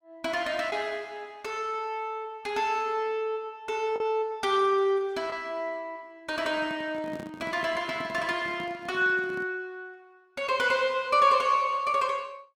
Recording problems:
packet loss; 0.7% of the sound replaced, filled with the last packet
microphone handling noise; from 6.5 to 9.5 s; peak -9 dB vs average level

